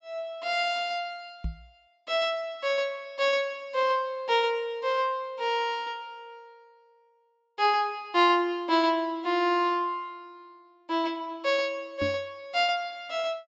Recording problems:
low-pass filter; nothing above 8 kHz
knock on the microphone; at 1.5 s and at 12 s; peak -2 dB vs average level

